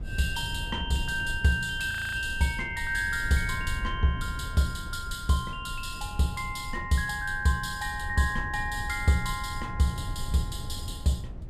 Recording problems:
rumble; below 98 Hz, SNR 10 dB
audio freezing; at 2 s

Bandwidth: 14.5 kHz